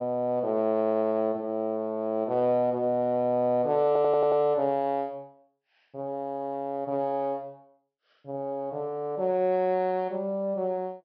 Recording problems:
treble cut off; nothing above 5.5 kHz
audio stuttering; at 4 s

